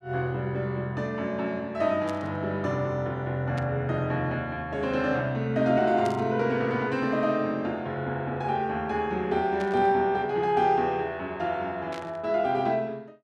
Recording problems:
static burst; 5 times, first at 2 s; peak -9 dB vs average level

